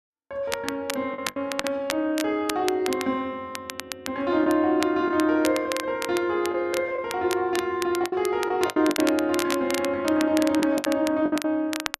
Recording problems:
crackle; vinyl, SNR 10 dB
lost packets; 6% of the sound replaced, filled with the last packet

